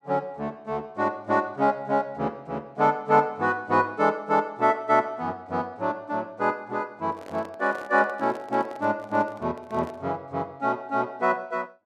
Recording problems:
handling noise; from 7 to 10 s; peak -12 dB vs average level

